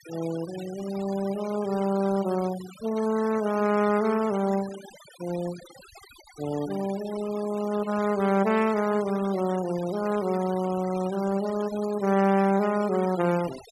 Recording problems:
denoising artefacts; signal-to-artefact ratio 16 dB

